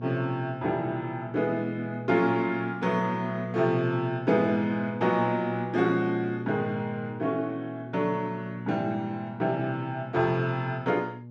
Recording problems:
electrical hum; 60 Hz, harmonics up to 600 Hz, SNR 12 dB

